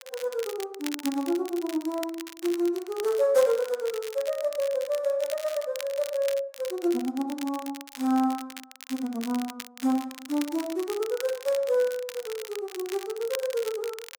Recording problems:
crackling; vinyl, SNR 13 dB

